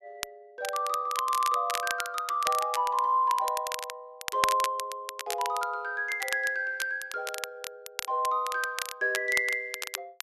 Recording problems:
crackle; vinyl, SNR 8 dB

